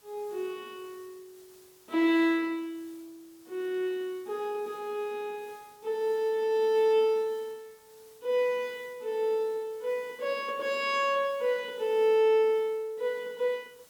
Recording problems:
hiss; slope -1 dB per octave, SNR 28 dB

